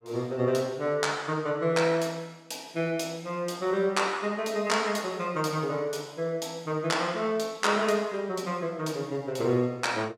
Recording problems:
none

